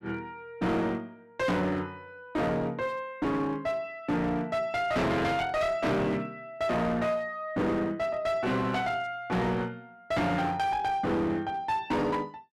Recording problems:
distorted audio; hard clipping, uneven, signal-to-distortion ratio 6 dB

